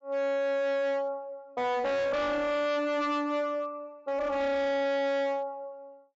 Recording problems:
low-pass filter; nothing above 7.4 kHz
distorted audio; hard clipping, signal-to-distortion ratio 7 dB

